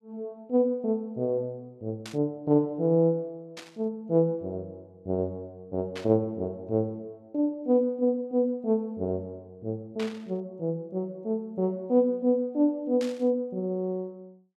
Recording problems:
burst of static; 5 times, first at 2 s; peak -7 dB vs average level

